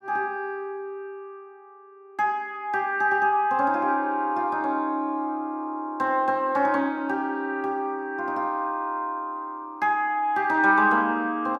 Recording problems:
none

